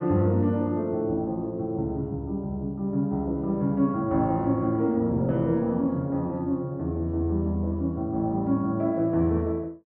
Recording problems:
treble missing; nothing above 5.5 kHz

